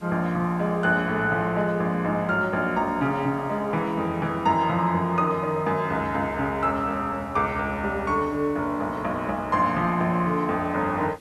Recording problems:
background hiss; SNR 26 dB

